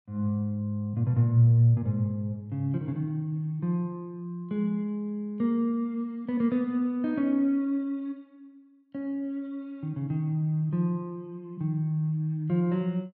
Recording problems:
none

